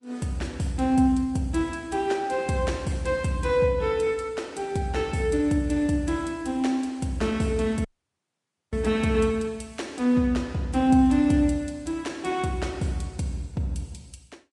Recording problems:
lossy codec; Vorbis, log-spectral distance 2 dB, nothing above 10.4 kHz
audio cutting out; at 8 s for 1 s

